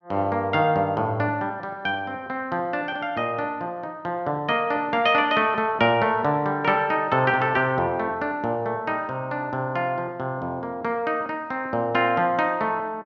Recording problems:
none

